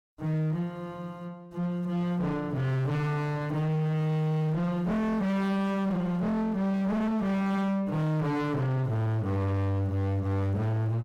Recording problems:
distorted audio; hard clipping, uneven, signal-to-distortion ratio 6 dB

